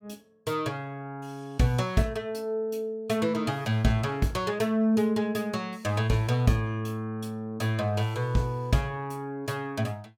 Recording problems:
none

